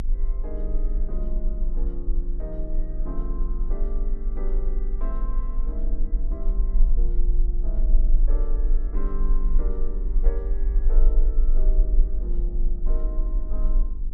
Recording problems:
hum; 50 Hz, harmonics up to 800 Hz, SNR 9 dB
low-frequency rumble; below 36 Hz, strongest tone 24 Hz, SNR -13 dB

